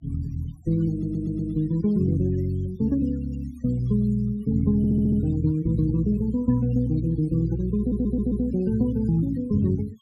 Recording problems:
noise reduction artefacts; signal-to-artefact ratio 25 dB
stutter; at 1 s, at 5 s and at 8 s

